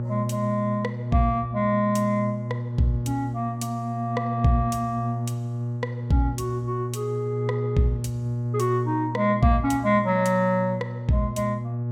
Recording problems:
electrical hum; 60 Hz, harmonics up to 840 Hz, SNR 5 dB

